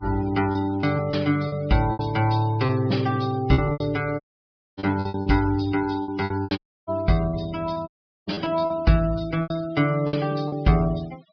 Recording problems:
treble cut off; nothing above 5.5 kHz
denoising artefacts; signal-to-artefact ratio 21 dB
packet loss; 10% of the sound replaced, filled with repeated pitch periods
dropout; at 4 s for 0.5 s, at 6.5 s and at 8 s

